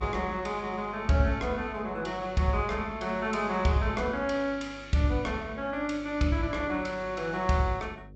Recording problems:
low-pass filter; nothing above 8 kHz
hum; 50 Hz, harmonics up to 600 Hz, SNR 20 dB

